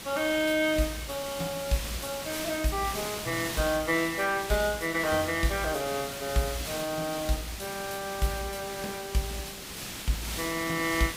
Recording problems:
hiss; slope -1 dB per octave, SNR 6 dB

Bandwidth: 15.5 kHz